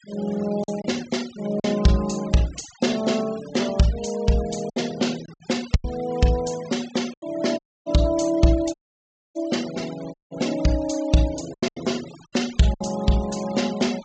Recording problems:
treble cut off; nothing above 8 kHz
noise reduction artefacts; signal-to-artefact ratio 17 dB
packet loss; 5% of the sound replaced, filled with silence
dropout; at 7.5 s, at 8.5 s for 0.5 s and at 10 s

